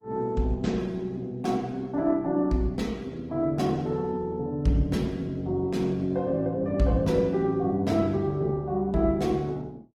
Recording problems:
lossy codec; Opus, log-spectral distance 2 dB, nothing above 19 kHz

